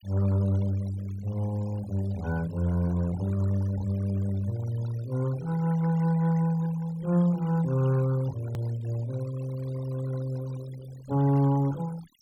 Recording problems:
noise reduction artefacts; signal-to-artefact ratio 20 dB
hard cut with a click; at 8.5 s

